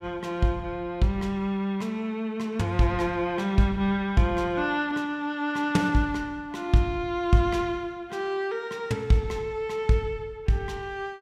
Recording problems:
none

